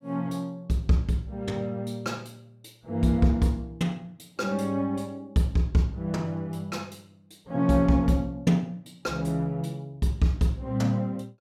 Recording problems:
none

